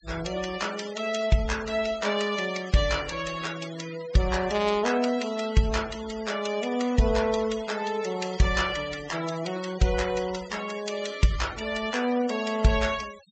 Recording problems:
low-pass filter; nothing above 8 kHz
denoising artefacts; signal-to-artefact ratio 15 dB

